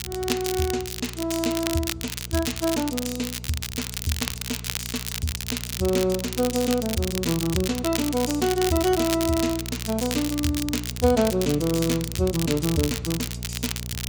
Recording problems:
electrical hum; 60 Hz, harmonics up to 660 Hz, SNR 11 dB
crackling; vinyl, SNR 5 dB

